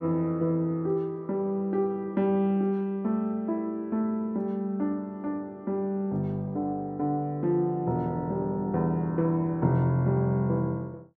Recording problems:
none

